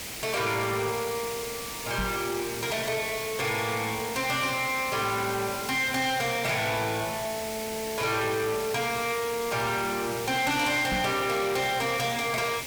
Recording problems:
distorted audio; soft clipping, signal-to-distortion ratio 11 dB
hiss; SNR 8 dB
knock on the microphone; at 2 s and at 11 s; peak +1 dB vs average level

